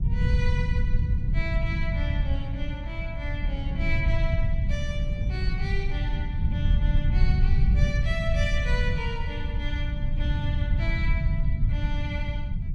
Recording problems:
rumble; below 100 Hz, SNR -8 dB
wind noise; below 110 Hz, SNR 10 dB

